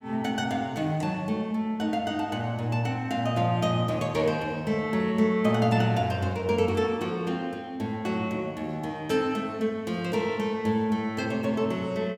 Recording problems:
none

